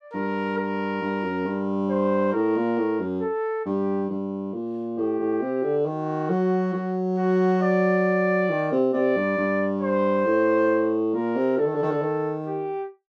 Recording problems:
none

